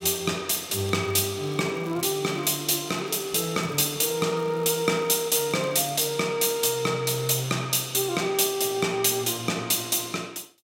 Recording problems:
crackle; from 0.5 to 6 s; loose cable, SNR 26 dB

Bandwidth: 16 kHz